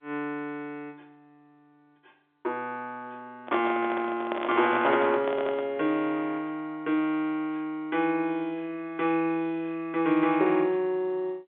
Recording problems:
telephone audio; 260 Hz to 3.8 kHz, G.711
microphone handling noise; from 3.5 to 5.5 s; peak +2 dB vs average level
stutter; at 5.5 s

